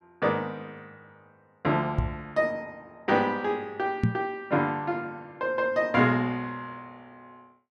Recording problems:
microphone bump; at 2 s and at 4 s; peak +7 dB vs average level

